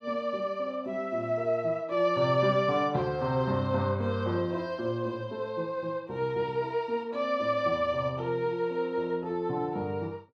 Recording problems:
none

